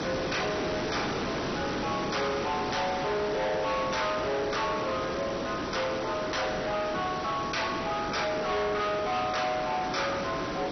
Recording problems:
lossy codec; MP2, log-spectral distance 13 dB, nothing above 6 kHz
distortion; soft clipping, signal-to-distortion ratio 6 dB
hiss; slope -5 dB per octave, SNR 4 dB

